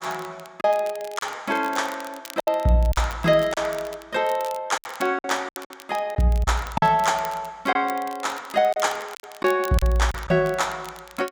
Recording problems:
crackle; vinyl, SNR 19 dB
lost packets; 7% of the sound replaced, filled with silence

